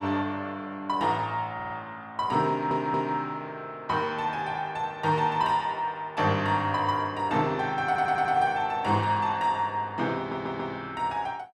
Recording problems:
audio stuttering; 4 times, first at 1.5 s

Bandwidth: 12.5 kHz